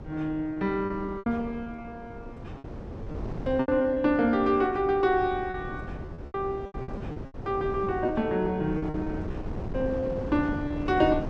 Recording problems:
wind on the microphone; below 370 Hz, SNR 11 dB
packet loss; 9% of the sound replaced, filled with repeated pitch periods

